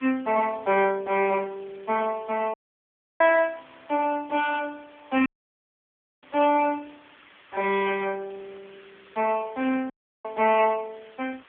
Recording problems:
telephone audio; 220 Hz to 3.3 kHz, AMR-NB
background hiss; SNR 27 dB
audio cutting out; at 2.5 s for 0.5 s, at 5.5 s for 1 s and at 10 s

